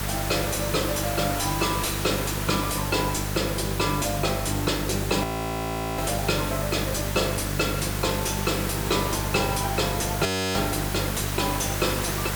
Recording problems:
distorted audio; soft clipping, signal-to-distortion ratio 9 dB
hum; 50 Hz, harmonics up to 900 Hz, SNR 5 dB
hiss; slope -2 dB per octave, SNR 5 dB
frozen audio; at 5 s for 0.5 s and at 10 s

